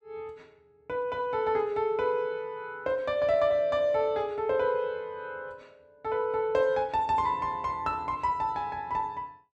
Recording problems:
none

